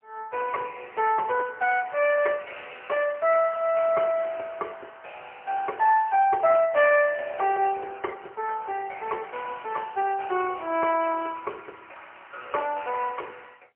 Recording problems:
telephone audio; 340 Hz to 3.1 kHz, AMR-NB, then MP3

